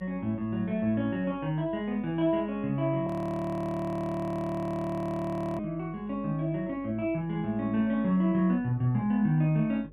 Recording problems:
hum; 50 Hz, harmonics up to 600 Hz, SNR 26 dB
audio freezing; at 3 s for 2.5 s

